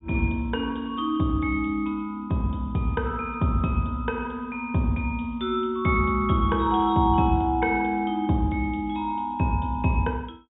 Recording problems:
treble missing; nothing above 4 kHz

